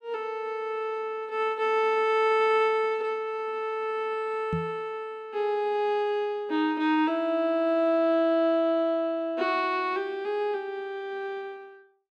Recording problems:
microphone bump; at 4.5 s; peak -1 dB vs average level

